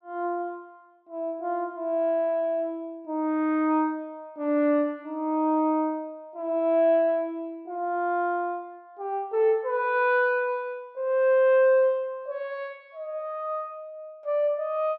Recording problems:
none

